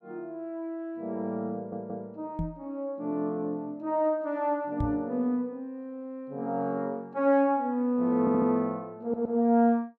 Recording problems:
audio stuttering; at 1.5 s, at 8 s and at 9 s
microphone thump; at 2.5 s and at 5 s; peak +1 dB vs average level

